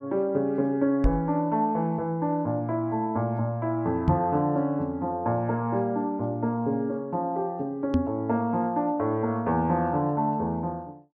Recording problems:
microphone thump; at 1 s, at 4 s and at 8 s; peak +6 dB vs average level

